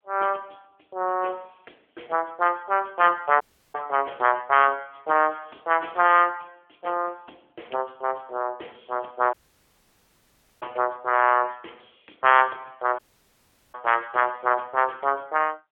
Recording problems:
phone line; 280 Hz to 3.3 kHz, AMR-NB
dropout; at 3.5 s, at 9.5 s for 1.5 s and at 13 s for 1 s

